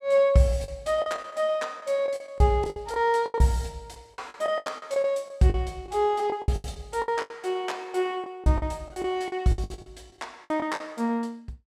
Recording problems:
packet loss; 15% of the sound replaced, filled with the last packet

